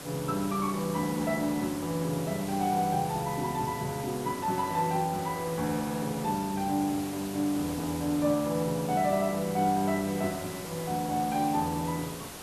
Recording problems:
hiss; slope -4 dB per octave, SNR 11 dB

